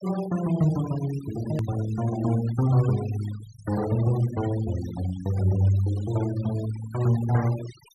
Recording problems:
denoising artefacts; signal-to-artefact ratio 17 dB
edit click; at 1.5 s

